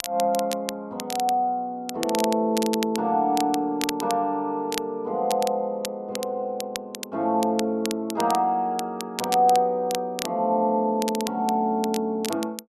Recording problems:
crackling; vinyl, SNR 11 dB

